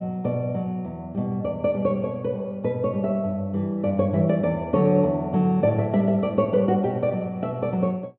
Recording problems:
treble cut off; nothing above 4 kHz

